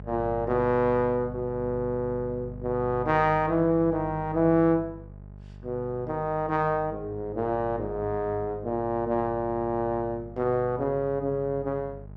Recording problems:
hum; 50 Hz, harmonics up to 850 Hz, SNR 16 dB

